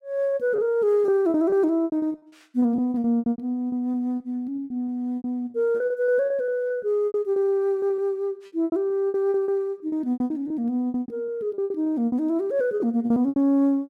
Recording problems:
packet loss; 17% of the sound replaced, filled with repeated pitch periods

